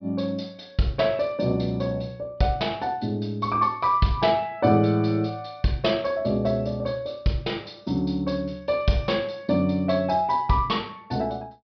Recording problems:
treble cut off; nothing above 5.5 kHz

